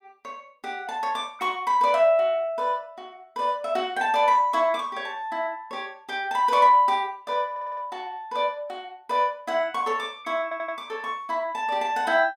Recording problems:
stutter; at 7.5 s and at 10 s

